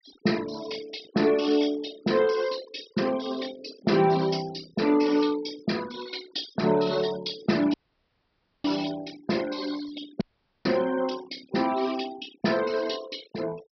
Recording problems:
treble cut off; nothing above 5.5 kHz
denoising artefacts; signal-to-artefact ratio 16 dB
audio cutting out; at 7.5 s for 1 s and at 10 s

